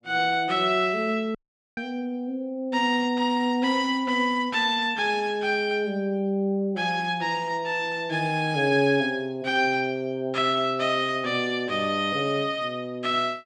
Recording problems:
dropout; at 1.5 s

